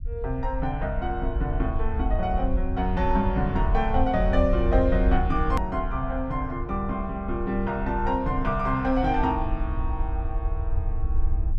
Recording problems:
rumble; below 68 Hz, SNR 3 dB
hard cut with a click; at 5.5 s

